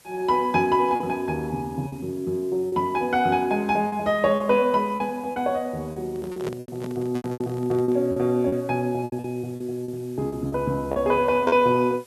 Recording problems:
hiss; slope -1 dB per octave, SNR 28 dB
lost packets; 9% of the sound replaced, filled with repeated pitch periods
microphone handling noise; from 6 to 8 s; peak -4 dB vs average level

